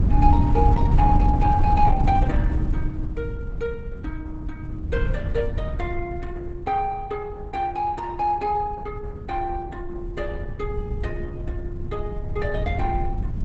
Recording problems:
lossy compression; Opus, log-spectral distance 2 dB, nothing above 7.8 kHz
wind noise; below 100 Hz, SNR -1 dB

